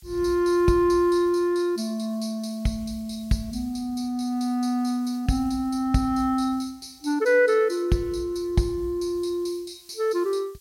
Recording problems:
background hiss; slope +6 dB per octave, SNR 30 dB

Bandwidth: 16 kHz